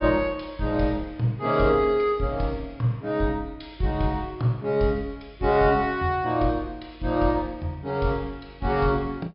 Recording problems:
low-pass filter; nothing above 5.5 kHz

